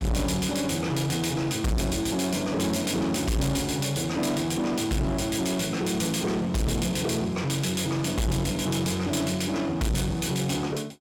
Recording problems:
distortion; soft clipping, signal-to-distortion ratio 6 dB

